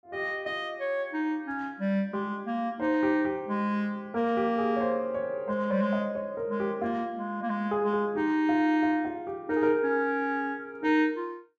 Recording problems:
none

